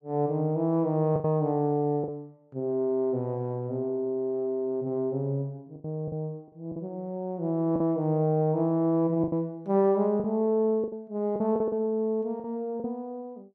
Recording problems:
lost packets; 6% of the sound replaced, filled with the last packet

